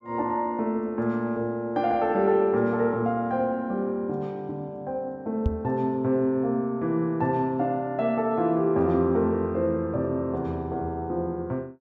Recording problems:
microphone bump; at 5.5 s; peak +4 dB vs average level

